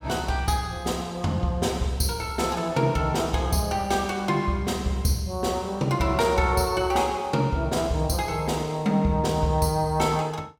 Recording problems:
none

